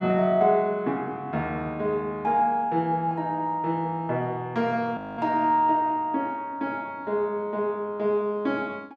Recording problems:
frozen audio; at 5 s

